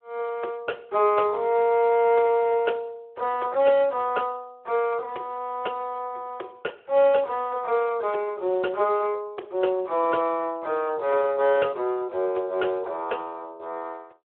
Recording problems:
phone line; 320 Hz to 3.2 kHz, Speex

